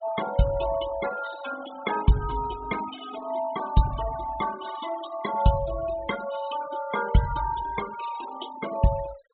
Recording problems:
low-pass filter; nothing above 4 kHz
denoising artefacts; signal-to-artefact ratio 13 dB

